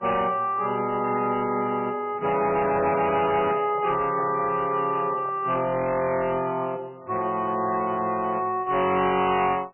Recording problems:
codec artefacts; MP3, log-spectral distance 4 dB, nothing above 2.5 kHz
distortion; hard clipping, signal-to-distortion ratio 11 dB
handling noise; from 2.5 to 5.5 s; peak -10 dB vs average level

